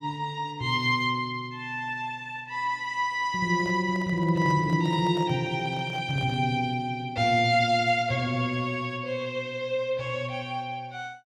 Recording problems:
microphone handling noise; from 3.5 to 6.5 s; peak -11 dB vs average level

